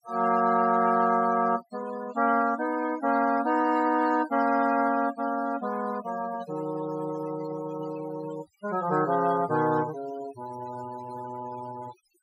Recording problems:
denoising artefacts; signal-to-artefact ratio 16 dB

